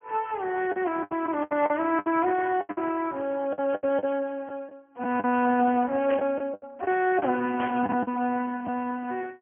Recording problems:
low-pass filter; nothing above 3 kHz
codec artefacts; Speex, log-spectral distance 3 dB
packet loss; 11% of the sound replaced, filled with the last packet
static burst; at 6 s and at 7.5 s; peak -6 dB vs average level

